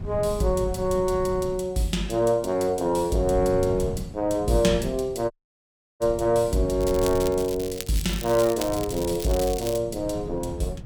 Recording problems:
wind on the microphone; below 180 Hz, SNR 12 dB
audio cutting out; at 5.5 s for 0.5 s
crackle; from 7 to 10 s; loose cable, SNR 12 dB

